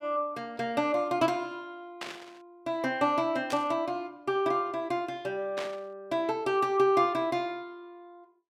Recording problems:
static burst; at 2 s, at 3.5 s and at 5.5 s; peak -4 dB vs average level

